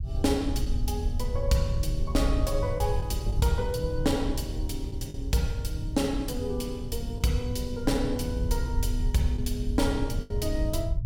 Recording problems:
low-frequency rumble; below 82 Hz, SNR 2 dB
lost packets; 3% of the sound replaced, filled with the last packet

